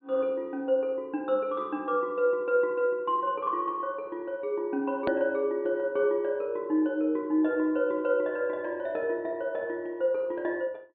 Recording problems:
low-pass filter; nothing above 4.5 kHz
click at an edit; at 5 s

